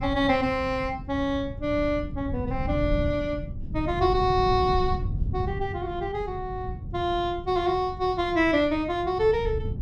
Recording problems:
wind noise; below 140 Hz, SNR 8 dB

